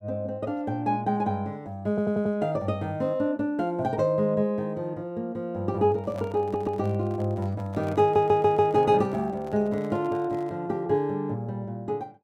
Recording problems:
audio stuttering; at 2 s, at 6.5 s and at 8 s
microphone handling noise; from 6 to 11 s; peak -11 dB vs average level

